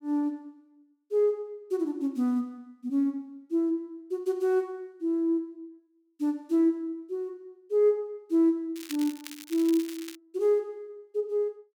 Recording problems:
crackle; from 9 to 10 s; loose cable, SNR 15 dB

